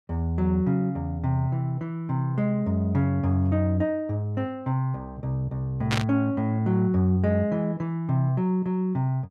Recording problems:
burst of static; at 6 s; peak +2 dB vs average level

